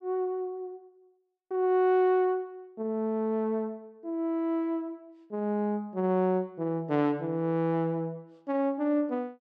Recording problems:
none

